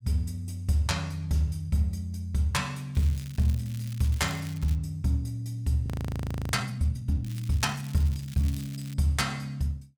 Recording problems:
crackle; from 3 to 5 s and from 7 to 9 s; loose cable, SNR 19 dB
frozen audio; at 6 s for 0.5 s

